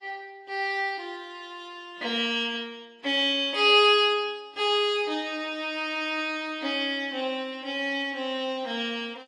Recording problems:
codec artefacts; AAC, log-spectral distance 2 dB

